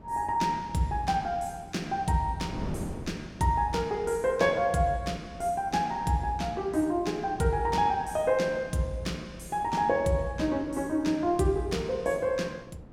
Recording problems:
wind on the microphone; below 360 Hz, SNR 17 dB

